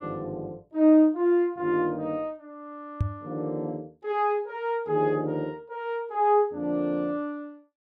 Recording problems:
microphone thump; at 3 s; peak +3 dB vs average level

